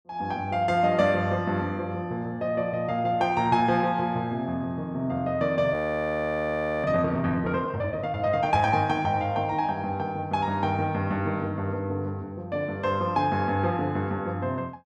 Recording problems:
audio freezing; at 5.5 s for 1 s

